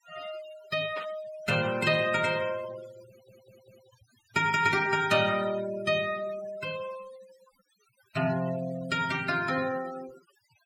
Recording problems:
noise reduction artefacts; signal-to-artefact ratio 16 dB
burst of static; at 1 s; peak -10 dB vs average level
audio stuttering; at 3 s

